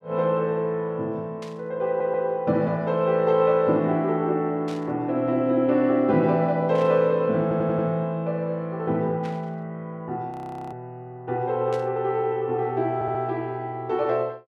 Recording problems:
static burst; 5 times, first at 1.5 s; peak -13 dB vs average level
stutter; at 2 s, at 7.5 s and at 13 s
frozen audio; at 10 s

